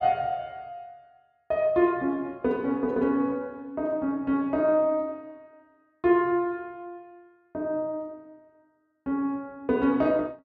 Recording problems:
none

